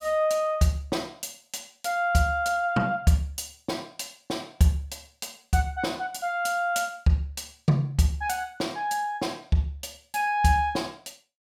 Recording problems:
none

